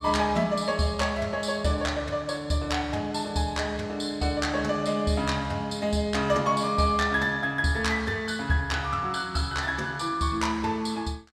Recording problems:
none

